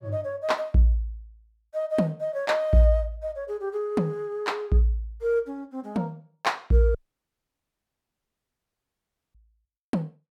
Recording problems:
audio cutting out; at 7 s for 2.5 s

